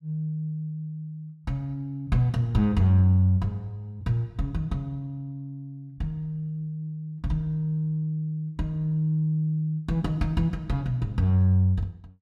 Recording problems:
none

